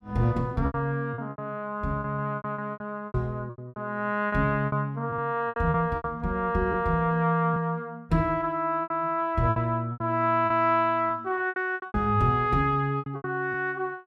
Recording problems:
packet loss; 13% of the sound replaced, filled with repeated pitch periods

